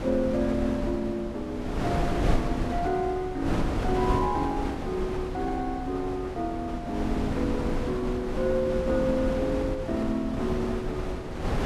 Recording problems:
wind on the microphone; below 460 Hz, SNR 2 dB

